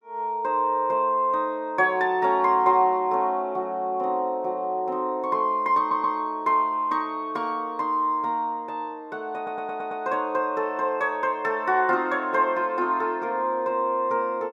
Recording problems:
audio stuttering; at 6 s and at 9.5 s

